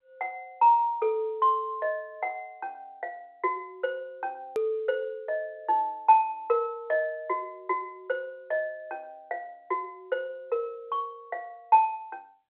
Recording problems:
phone line; 320 Hz to 3.3 kHz, G.711
click at an edit; at 4.5 s

